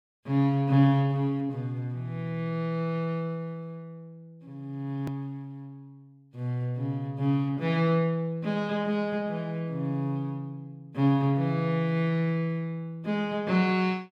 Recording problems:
hard cut with a click; at 5 s

